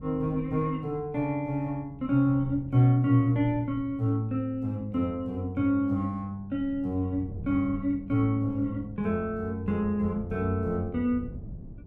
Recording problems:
wind noise; below 180 Hz, SNR 18 dB

